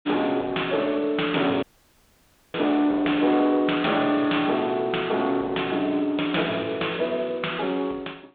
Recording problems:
phone line; 220 Hz to 3.7 kHz, G.726
distortion; soft clipping, signal-to-distortion ratio 14 dB
dropout; at 1.5 s for 1 s

